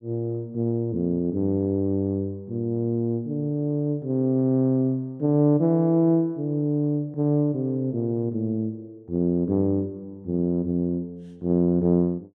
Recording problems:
none

